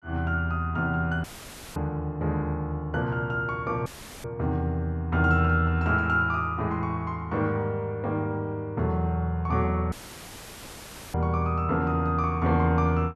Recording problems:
dropout; at 1 s for 0.5 s, at 4 s and at 10 s for 1 s; filled with static

